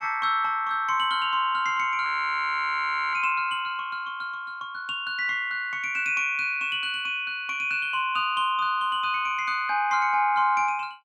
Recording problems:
audio freezing; at 2 s for 1 s

